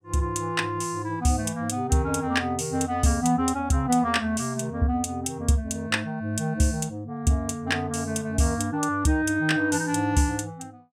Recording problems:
none

